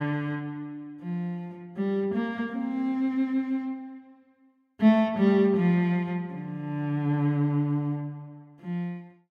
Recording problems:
none

